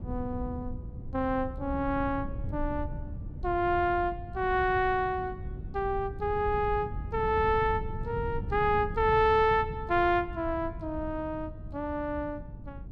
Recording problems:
wind on the microphone; below 130 Hz, SNR 10 dB

